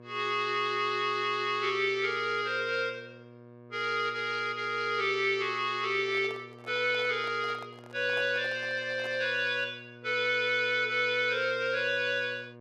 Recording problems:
hum; 60 Hz, harmonics up to 1.8 kHz, SNR 21 dB
microphone handling noise; from 6 to 9.5 s; peak -12 dB vs average level

